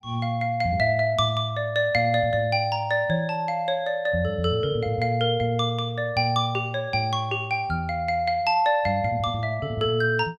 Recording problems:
none

